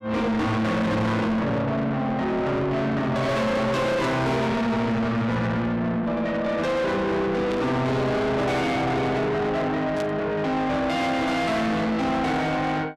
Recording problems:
distorted audio; soft clipping, signal-to-distortion ratio 5 dB
static burst; at 4 s, at 7.5 s and at 10 s; peak -10 dB vs average level

